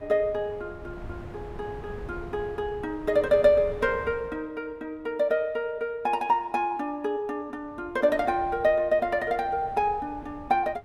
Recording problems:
wind noise; below 400 Hz, SNR 17 dB

